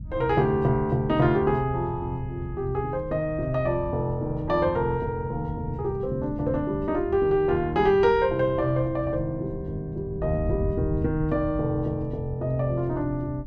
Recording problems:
wind on the microphone; below 120 Hz, SNR 11 dB

